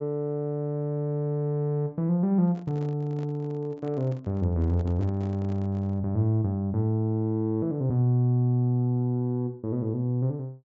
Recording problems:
treble cut off; nothing above 8 kHz
handling noise; from 2.5 to 6 s; peak -12 dB vs average level

